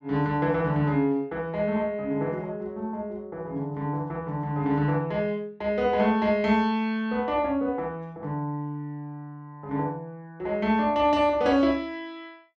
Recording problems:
none

